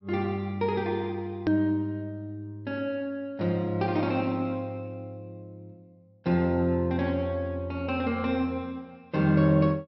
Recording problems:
treble cut off; nothing above 5.7 kHz
click at an edit; at 1.5 s

